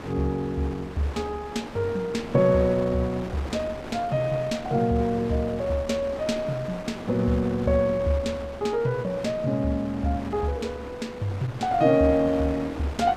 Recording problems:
wind on the microphone; below 1.3 kHz, SNR 13 dB

